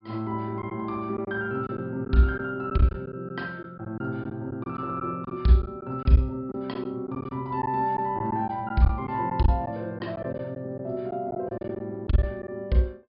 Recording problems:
treble missing; nothing above 5.5 kHz
lost packets; 7% of the sound replaced, filled with silence

